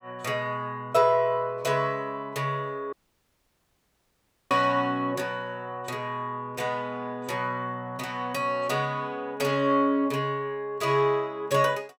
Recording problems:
audio cutting out; at 3 s for 1.5 s

